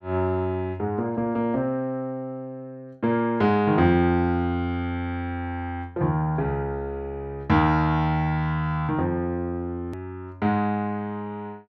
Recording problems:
edit click; at 10 s

